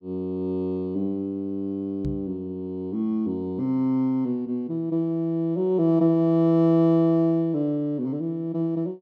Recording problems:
microphone thump; at 2 s; peak -3 dB vs average level

